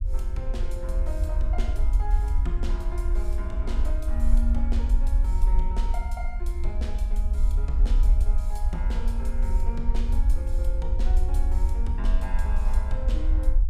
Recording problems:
rumble; below 54 Hz, SNR -11 dB

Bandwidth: 15.5 kHz